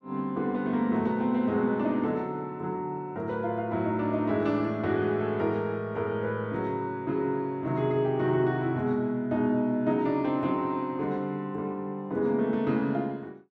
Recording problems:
none

